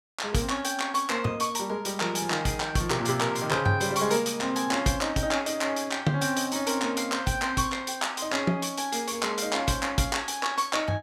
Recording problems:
none

